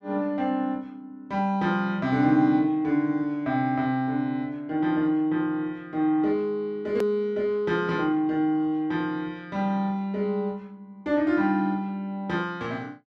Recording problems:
edit click; at 7 s

